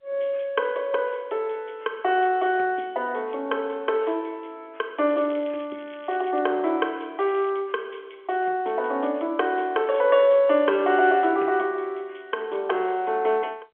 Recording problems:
phone line; 280 Hz to 3.4 kHz, G.711
crackling; from 5 to 6.5 s and at 7.5 s; loose cable, SNR 27 dB

